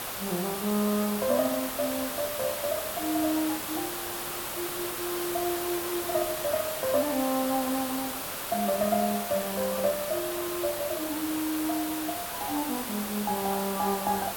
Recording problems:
background hiss; SNR 3 dB

